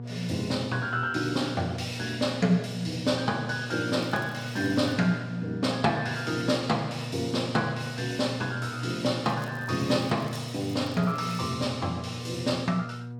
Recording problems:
electrical hum; 60 Hz, harmonics up to 960 Hz, SNR 9 dB
crackling; at 4 s and from 9 to 12 s; loose cable, SNR 27 dB

